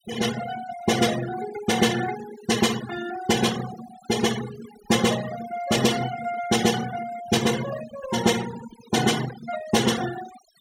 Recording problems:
denoising artefacts; signal-to-artefact ratio 11 dB

